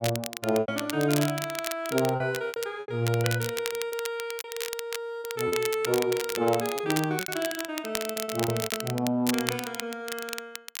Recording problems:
crackle; vinyl, SNR 6 dB
packet loss; 8% of the sound replaced, filled with repeated pitch periods

